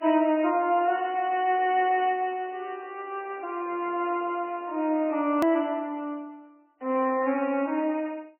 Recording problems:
lossy compression; MP3, log-spectral distance 2 dB, nothing above 20.1 kHz
click at an edit; at 5.5 s

